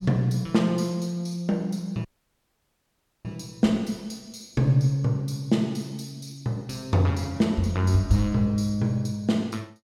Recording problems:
dropout; at 2 s for 1 s

